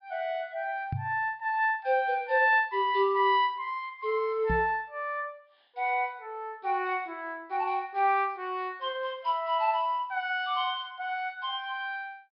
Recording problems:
treble missing; nothing above 5.5 kHz
knock on the microphone; at 1 s and at 4.5 s; peak -1 dB vs average level

